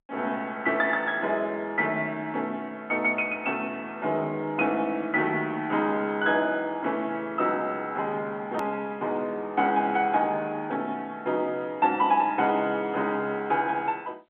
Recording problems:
phone line; 300 Hz to 3.5 kHz, G.711
edit click; at 8.5 s

